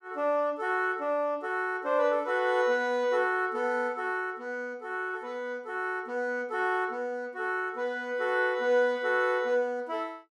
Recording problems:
none

